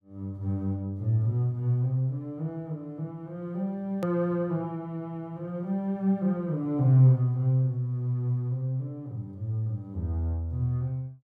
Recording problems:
click at an edit; at 4 s

